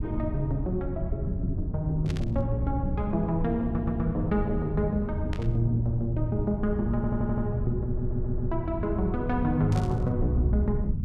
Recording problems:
low-frequency rumble; below 120 Hz, SNR 4 dB
burst of static; at 2 s, at 5.5 s and at 9.5 s; peak -8 dB vs average level
stutter; at 3.5 s, at 7 s and at 8 s

